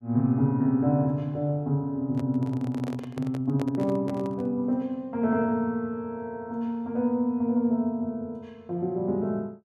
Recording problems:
microphone handling noise; from 2 to 4.5 s; peak -5 dB vs average level

